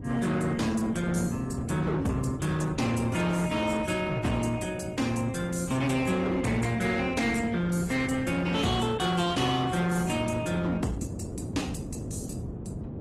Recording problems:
codec artefacts; AAC, then Opus, log-spectral distance 4 dB, nothing above 15.5 kHz
distorted audio; hard clipping, signal-to-distortion ratio 10 dB
wind noise; below 310 Hz, SNR 10 dB

